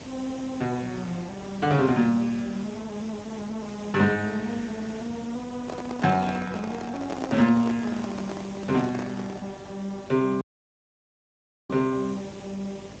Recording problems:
codec artefacts; Speex, log-spectral distance 6 dB
hum; 50 Hz, harmonics up to 400 Hz, SNR 24 dB
hiss; SNR 16 dB
microphone handling noise; from 5.5 to 9.5 s; peak 0 dB vs average level
audio cutting out; at 10 s for 1.5 s

